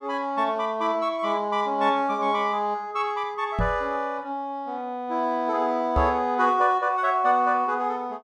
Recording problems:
knock on the microphone; at 3.5 s and at 6 s; peak +1 dB vs average level

